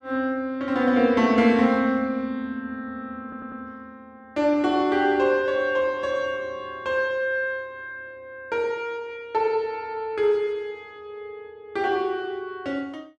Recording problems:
audio stuttering; at 3 s

